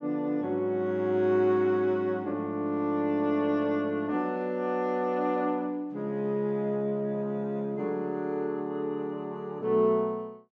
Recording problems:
none

